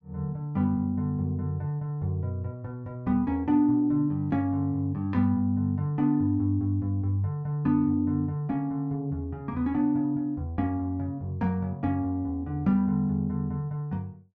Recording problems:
none

